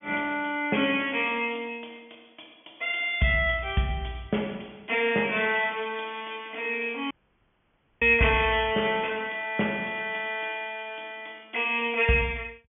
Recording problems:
treble cut off; nothing above 3.4 kHz
audio cutting out; at 7 s for 1 s

